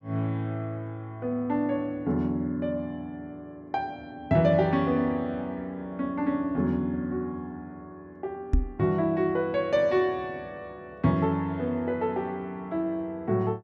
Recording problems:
microphone bump; at 8.5 s; peak +7 dB vs average level

